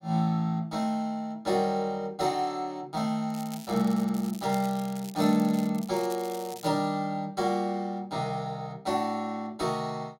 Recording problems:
crackling; from 3.5 to 6.5 s; loose cable, SNR 17 dB

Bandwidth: 16 kHz